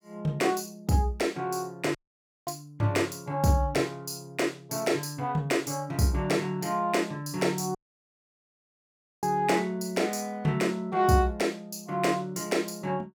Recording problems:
audio cutting out; at 2 s for 0.5 s and at 8 s for 1.5 s

